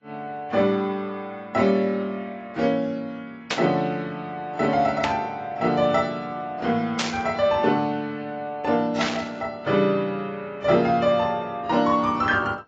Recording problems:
lossy codec; AAC, log-spectral distance 2 dB
burst of static; 4 times, first at 3.5 s; peak +3 dB vs average level

